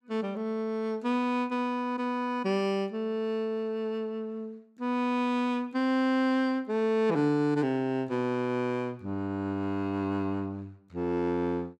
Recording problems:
none

